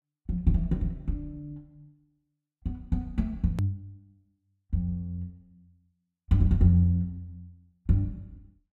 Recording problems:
edit click; at 3.5 s

